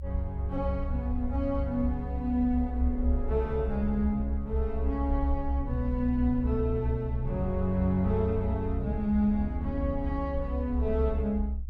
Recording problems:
rumble; below 68 Hz, strongest tone 64 Hz, SNR 3 dB

